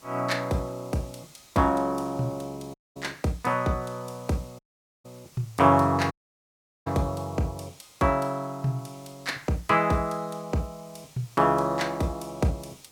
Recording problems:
background hiss; SNR 26 dB
audio cutting out; at 2.5 s, at 4.5 s and at 6 s for 1 s

